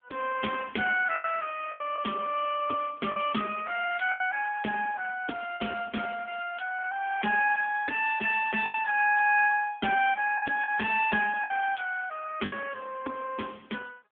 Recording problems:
telephone audio; 240 Hz to 3.3 kHz, AMR-NB
packet loss; 4% of the sound replaced, filled with the last packet

